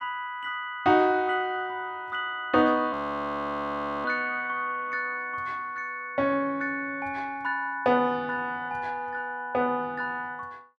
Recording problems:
audio freezing; at 3 s for 1 s

